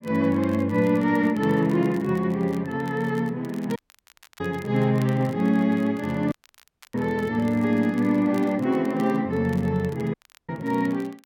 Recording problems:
crackling; vinyl, SNR 27 dB
audio cutting out; at 4 s for 0.5 s, at 6.5 s for 0.5 s and at 10 s

